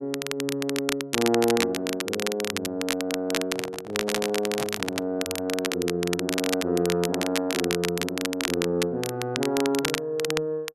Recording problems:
crackling; vinyl, SNR 3 dB
microphone handling noise; from 3.5 to 5 s; peak -2 dB vs average level

